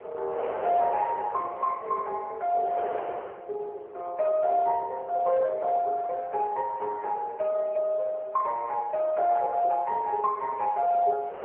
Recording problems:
telephone audio; 370 Hz to 2.1 kHz, AMR-NB
wind noise; below 870 Hz, SNR 14 dB

